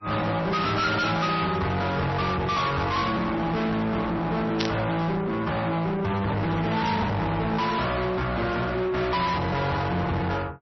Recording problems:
codec artefacts; MP3, then MP3, log-spectral distance 3 dB, nothing above 5.8 kHz
distortion; soft clipping, signal-to-distortion ratio 6 dB
burst of static; at 4.5 s; peak +3 dB vs average level

